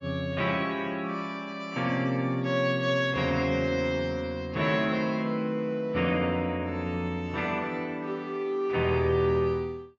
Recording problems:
lossy compression; AAC, log-spectral distance 2 dB, nothing above 6.2 kHz

